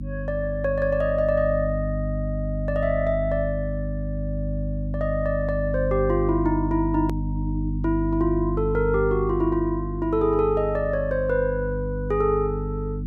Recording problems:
mains hum; 50 Hz, harmonics up to 300 Hz, SNR 4 dB
click at an edit; at 7 s

